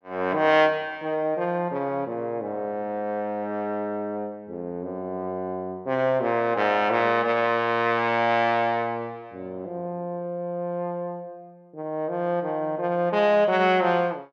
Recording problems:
none

